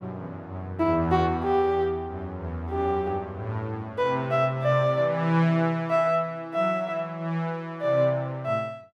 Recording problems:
none

